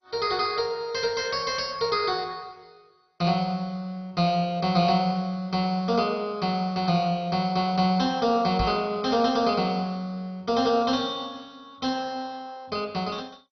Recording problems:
lossy codec; MP2, log-spectral distance 5 dB, nothing above 5 kHz
microphone thump; at 8.5 s; peak -1 dB vs average level

